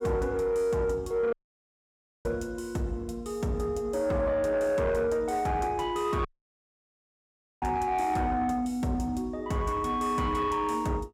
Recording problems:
distortion; soft clipping, signal-to-distortion ratio 11 dB
dropout; at 1.5 s for 1 s and at 6.5 s for 1.5 s

